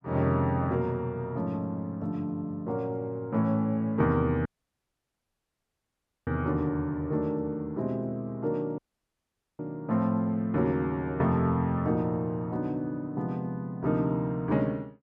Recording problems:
audio cutting out; at 4.5 s for 2 s and at 9 s for 1 s

